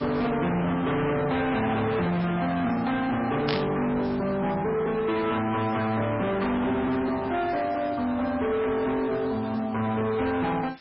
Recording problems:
lossy compression; MP3, log-spectral distance 7 dB
distortion; hard clipping, signal-to-distortion ratio 7 dB
hiss; SNR 24 dB
static burst; at 3.5 s; peak +1 dB vs average level

